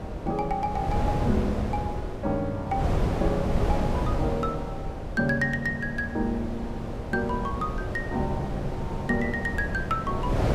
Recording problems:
wind on the microphone; below 410 Hz, SNR 1 dB

